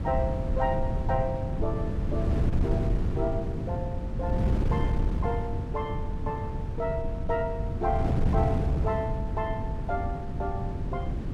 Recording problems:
wind noise; below 160 Hz, SNR -3 dB

